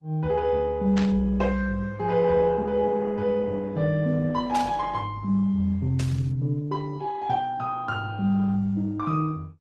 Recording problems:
lossy codec; Opus, then Opus, log-spectral distance 2 dB
burst of static; at 1 s, at 4.5 s and at 6 s; peak -5 dB vs average level

